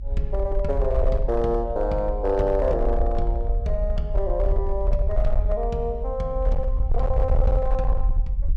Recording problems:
distorted audio; hard clipping, uneven, signal-to-distortion ratio 11 dB
low-frequency rumble; below 50 Hz, SNR 0 dB

